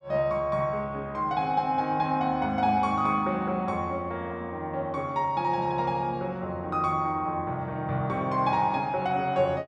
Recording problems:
none

